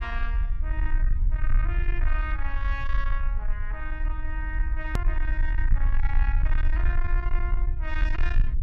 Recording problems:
distorted audio; soft clipping, signal-to-distortion ratio 10 dB
rumble; below 46 Hz, strongest tone 22 Hz, SNR -8 dB
hard cut with a click; at 5 s

